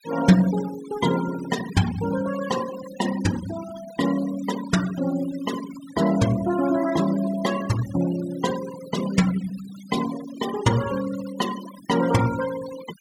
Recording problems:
noise reduction artefacts; signal-to-artefact ratio 13 dB

